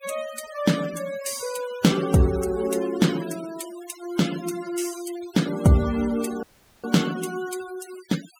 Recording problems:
noise reduction artefacts; signal-to-artefact ratio 15 dB
audio cutting out; at 6.5 s

